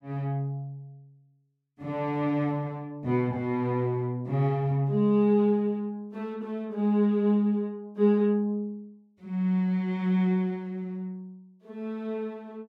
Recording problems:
none

